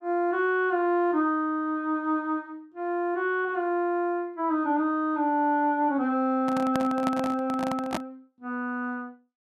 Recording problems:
handling noise; from 6.5 to 8 s; peak +1 dB vs average level

